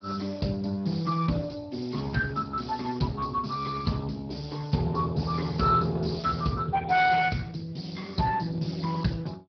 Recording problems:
low-pass filter; nothing above 5.3 kHz
lossy compression; Speex, log-spectral distance 6 dB

